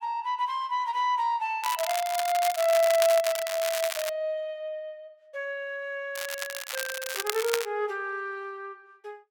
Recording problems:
crackle; from 1.5 to 4 s and from 6 to 7.5 s; loose cable, SNR 5 dB

